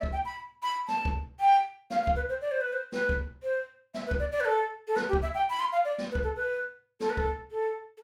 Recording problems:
none

